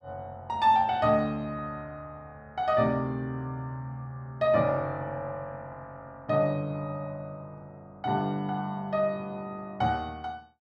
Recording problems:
none

